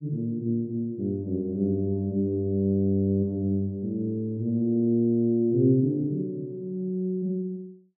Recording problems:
none

